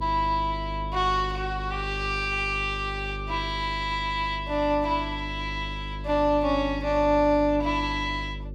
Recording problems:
mains hum; 50 Hz, harmonics up to 550 Hz, SNR 10 dB

